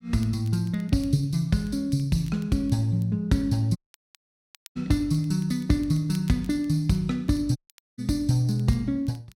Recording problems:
crackling; vinyl, SNR 29 dB
dropout; at 4 s for 1 s and at 7.5 s

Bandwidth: 16 kHz